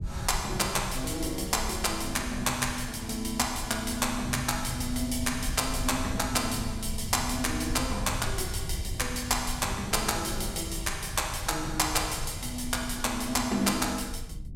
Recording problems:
low-frequency rumble; below 100 Hz, SNR 10 dB

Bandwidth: 16 kHz